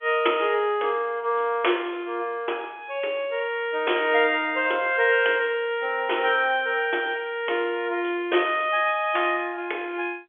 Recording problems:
phone line; 300 Hz to 3.4 kHz, G.711

